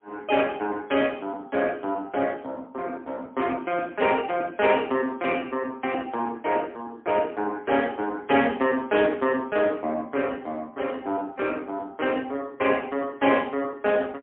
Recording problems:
telephone audio; 220 Hz to 3.4 kHz, AMR-NB, then MP3

